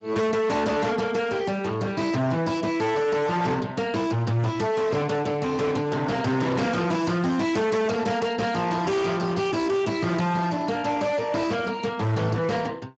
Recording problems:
lossy compression; Speex, log-spectral distance 4 dB, nothing above 7.3 kHz
distortion; hard clipping, signal-to-distortion ratio 6 dB

